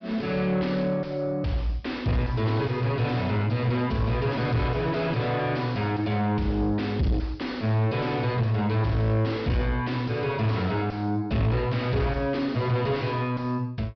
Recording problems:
treble missing; nothing above 5.5 kHz
distorted audio; soft clipping, signal-to-distortion ratio 7 dB

